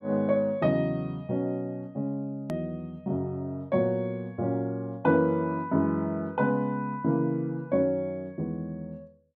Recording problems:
hard cut with a click; at 2.5 s

